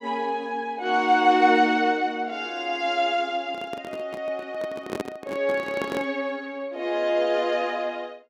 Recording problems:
handling noise; from 3.5 to 6 s; peak -1 dB vs average level

